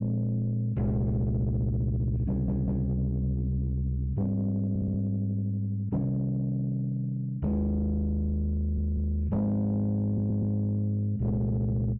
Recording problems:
distortion; soft clipping, signal-to-distortion ratio 11 dB
stutter; 4 times, first at 2.5 s

